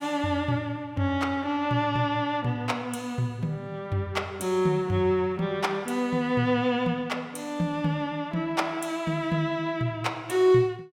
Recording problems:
none

